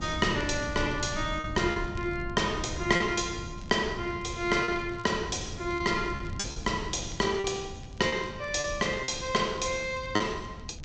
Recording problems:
treble missing; nothing above 8 kHz
wind noise; below 160 Hz, SNR 11 dB
crackling; vinyl, SNR 27 dB
lost packets; 5% of the sound replaced, filled with repeated pitch periods

